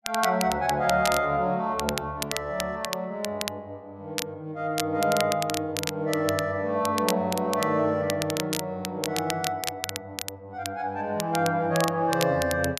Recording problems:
crackle; vinyl, SNR 7 dB

